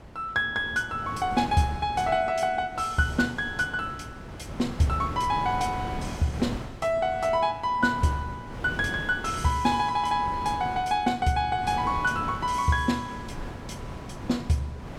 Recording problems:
wind on the microphone; below 610 Hz, SNR 12 dB

